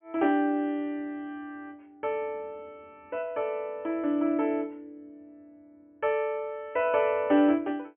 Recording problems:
low-pass filter; nothing above 3.2 kHz

